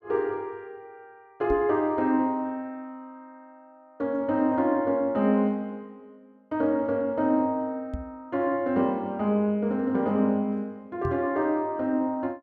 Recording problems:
microphone bump; at 1.5 s, at 8 s and at 11 s; peak -3 dB vs average level

